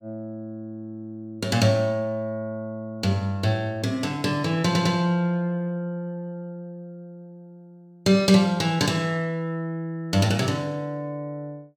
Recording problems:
audio stuttering; at 4.5 s

